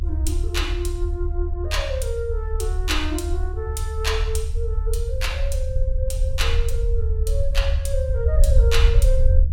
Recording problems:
rumble; below 74 Hz, SNR -4 dB

